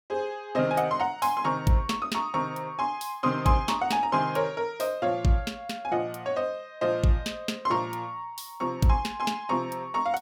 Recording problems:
none

